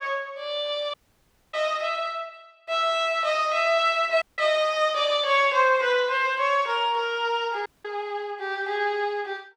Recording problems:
dropout; at 1 s for 0.5 s, at 4 s and at 7.5 s

